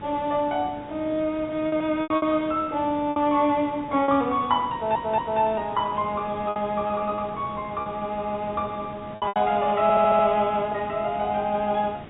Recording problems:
low-pass filter; nothing above 4 kHz
hiss; SNR 17 dB
lost packets; 6% of the sound replaced, filled with repeated pitch periods
audio stuttering; at 4.5 s and at 10 s

